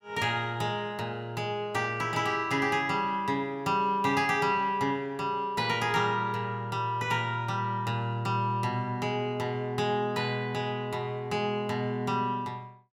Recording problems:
none

